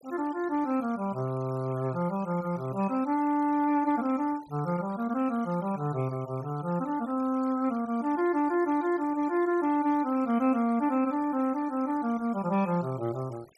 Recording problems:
denoising artefacts; signal-to-artefact ratio 24 dB

